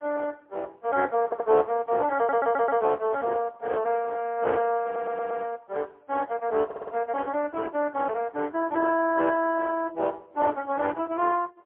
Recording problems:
phone line; 300 Hz to 3.2 kHz, AMR-NB, then MP3
audio stuttering; 4 times, first at 1.5 s

